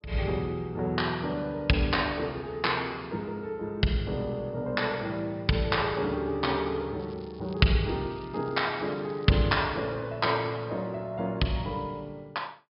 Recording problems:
low-pass filter; nothing above 5.5 kHz
crackling; from 7 to 9.5 s; loose cable, SNR 27 dB

